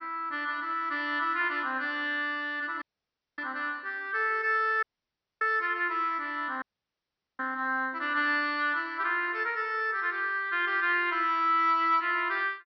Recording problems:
treble missing; nothing above 6 kHz
audio cutting out; at 3 s for 0.5 s, at 5 s for 0.5 s and at 6.5 s for 1 s

